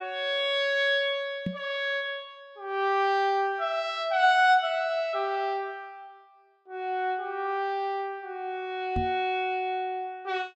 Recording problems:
knock on the microphone; at 1.5 s and at 9 s; peak 0 dB vs average level

